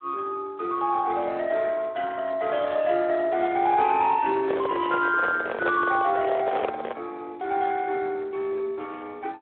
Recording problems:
phone line; 280 Hz to 3 kHz, Speex
handling noise; from 4.5 to 7 s; peak +3 dB vs average level

